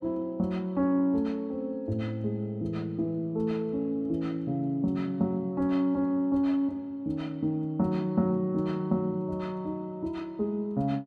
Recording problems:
none

